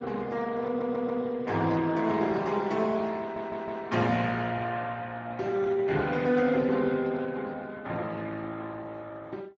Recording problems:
lossy compression; Speex, log-spectral distance 3 dB
audio stuttering; at 0.5 s and at 3 s

